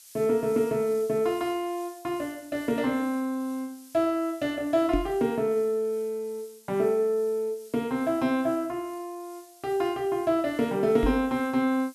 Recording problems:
hiss; SNR 23 dB
knock on the microphone; at 5 s and at 11 s; peak +4 dB vs average level

